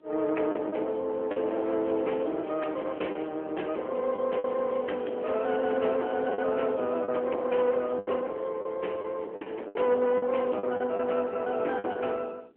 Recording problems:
telephone audio; 280 Hz to 3.5 kHz, AMR-NB
distortion; soft clipping, signal-to-distortion ratio 12 dB
wind on the microphone; below 770 Hz, SNR 19 dB
lost packets; 6% of the sound replaced, filled with the last packet
crackling; from 1.5 to 3.5 s and from 4.5 to 6.5 s; loose cable, SNR 26 dB

